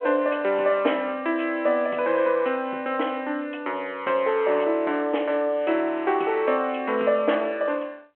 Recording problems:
telephone audio; 260 Hz to 3.2 kHz, G.726

